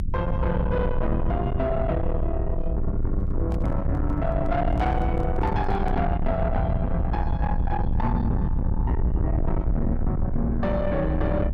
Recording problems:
distortion; soft clipping, signal-to-distortion ratio 8 dB
low-frequency rumble; below 130 Hz, strongest tone 22 Hz, SNR 0 dB
microphone handling noise; from 3 to 6 s; peak -11 dB vs average level

